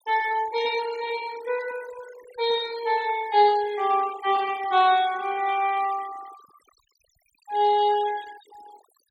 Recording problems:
denoising artefacts; signal-to-artefact ratio 19 dB

